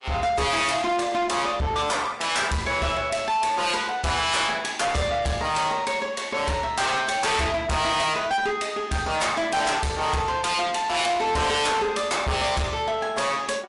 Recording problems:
lossy codec; MP3, log-spectral distance 4 dB, nothing above 11 kHz
distortion; soft clipping, signal-to-distortion ratio 6 dB

